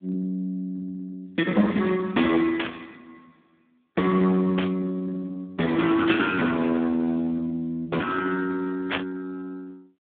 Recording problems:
telephone audio; 220 Hz to 3.5 kHz, Speex
distortion; hard clipping, signal-to-distortion ratio 18 dB
static burst; 4 times, first at 2.5 s; peak +3 dB vs average level

